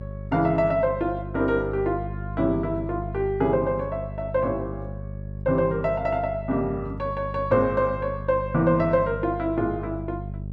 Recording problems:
hum; 50 Hz, harmonics up to 450 Hz, SNR 10 dB

